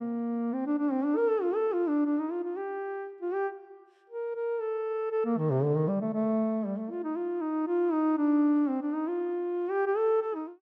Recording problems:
none

